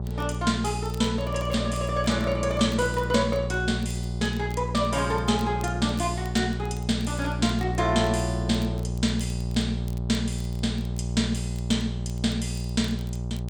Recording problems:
electrical hum; 60 Hz, harmonics up to 780 Hz, SNR 3 dB
crackling; vinyl, SNR 25 dB

